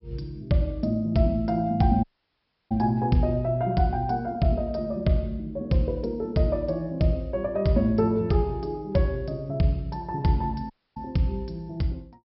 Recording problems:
treble cut off; nothing above 5.4 kHz
dropout; at 2 s for 0.5 s and at 11 s

